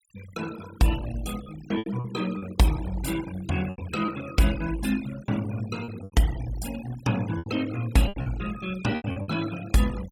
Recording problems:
noise reduction artefacts; signal-to-artefact ratio 15 dB
packet loss; 8% of the sound replaced, filled with repeated pitch periods

